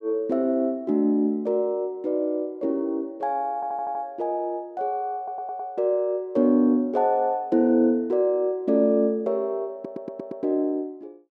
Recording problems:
audio stuttering; at 3.5 s, at 5 s and at 9.5 s

